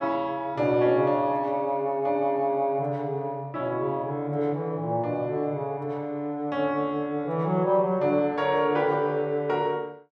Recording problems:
none

